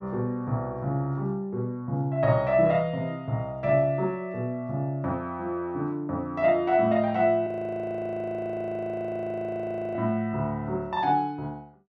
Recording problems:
frozen audio; at 7.5 s for 2.5 s

